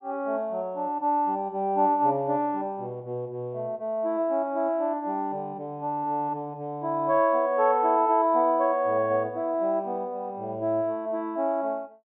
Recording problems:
low-pass filter; nothing above 4 kHz

